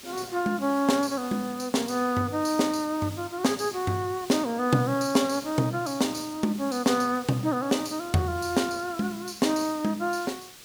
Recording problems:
hiss; SNR 17 dB

